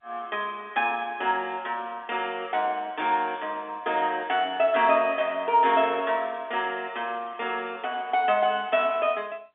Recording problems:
phone line; 240 Hz to 3.6 kHz, G.711

